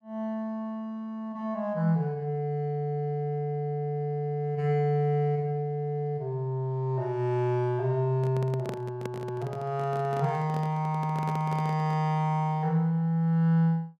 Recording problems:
microphone handling noise; from 8 to 12 s; peak -3 dB vs average level

